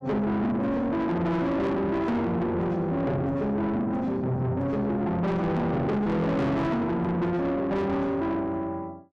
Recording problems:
distortion; soft clipping, signal-to-distortion ratio 7 dB

